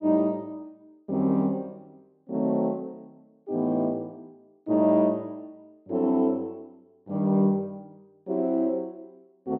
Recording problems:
none

